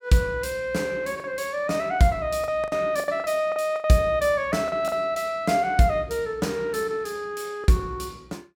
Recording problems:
lost packets; 6% of the sound replaced, filled with the last packet

